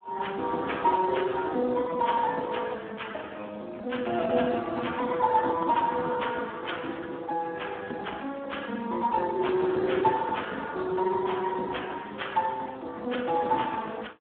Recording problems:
telephone audio; 220 Hz to 3.6 kHz, Speex

